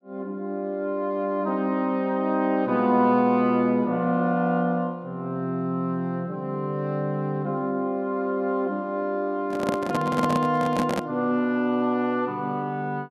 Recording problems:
microphone handling noise; from 9.5 to 11 s; peak +2 dB vs average level

